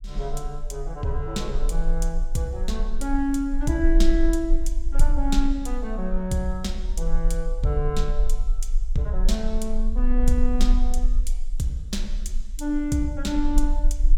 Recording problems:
rumble; below 36 Hz, strongest tone 22 Hz, SNR 0 dB

